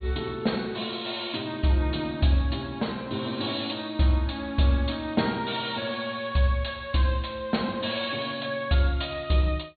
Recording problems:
low-pass filter; nothing above 4.4 kHz

